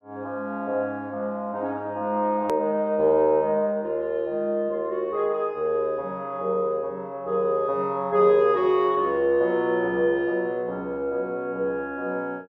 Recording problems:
edit click; at 2.5 s

